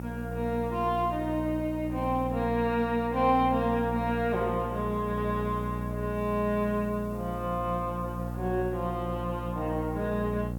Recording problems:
electrical hum; 60 Hz, harmonics up to 840 Hz, SNR 6 dB
hiss; SNR 28 dB

